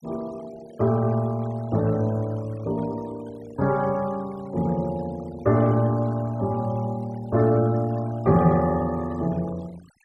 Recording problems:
denoising artefacts; signal-to-artefact ratio 23 dB

